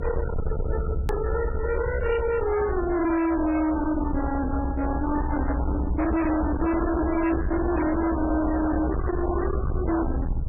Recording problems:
lossy compression; MP3, log-spectral distance 3 dB, nothing above 2.4 kHz
distorted audio; hard clipping, signal-to-distortion ratio 6 dB
electrical hum; 50 Hz, harmonics up to 450 Hz, SNR 20 dB
rumble; below 330 Hz, SNR 3 dB
click at an edit; at 1 s

